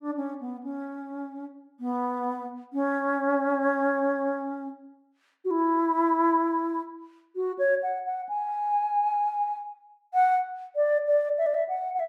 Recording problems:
none

